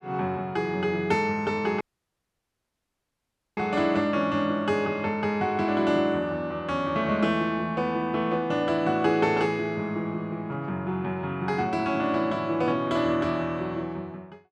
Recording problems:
audio cutting out; at 2 s for 2 s

